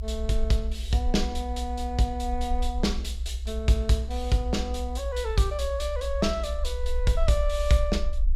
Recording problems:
low-frequency rumble; below 62 Hz, SNR 4 dB

